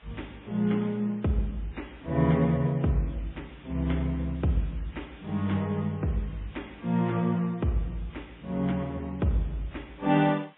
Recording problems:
low-pass filter; nothing above 3.3 kHz
lossy codec; MP3, log-spectral distance 6 dB
background hiss; SNR 27 dB

